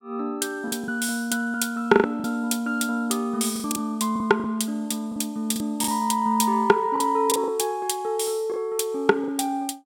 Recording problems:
packet loss; 7% of the sound replaced, filled with the last packet

